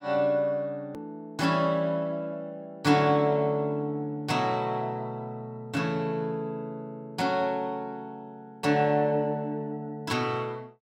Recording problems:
hard cut with a click; at 1 s

